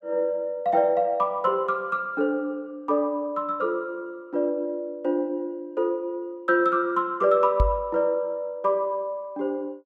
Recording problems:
microphone thump; at 7.5 s; peak +6 dB vs average level

